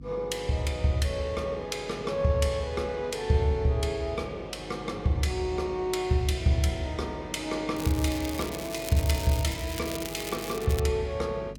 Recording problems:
hum; 50 Hz, harmonics up to 300 Hz, SNR 19 dB
crackling; from 8 to 11 s; loose cable, SNR 10 dB

